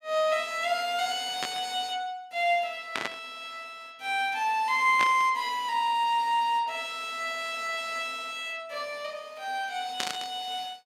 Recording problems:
static burst; 4 times, first at 1.5 s; peak +2 dB vs average level

